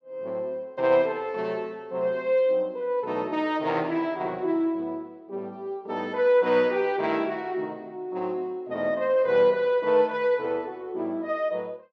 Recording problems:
none

